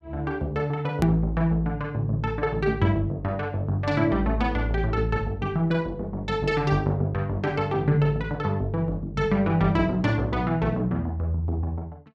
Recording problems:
hard cut with a click; at 1 s

